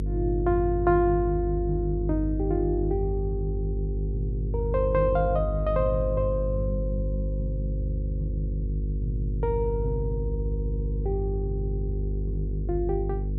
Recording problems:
hum; 50 Hz, harmonics up to 450 Hz, SNR 1 dB

